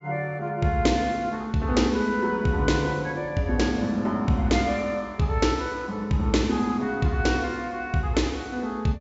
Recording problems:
treble cut off; nothing above 8 kHz

